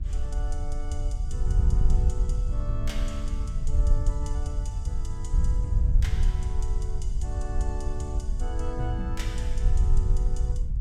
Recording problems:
wind noise; below 62 Hz, SNR -10 dB

